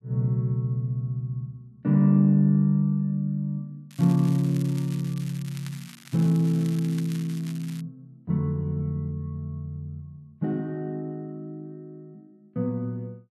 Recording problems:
crackle; from 4 to 8 s; loose cable, SNR 20 dB

